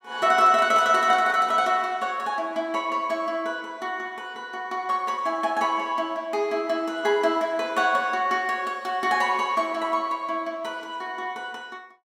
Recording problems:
none

